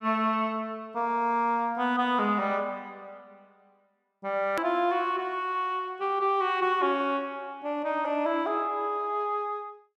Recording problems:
edit click; at 4.5 s

